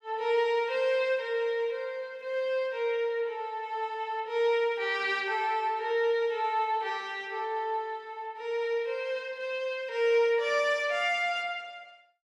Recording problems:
none

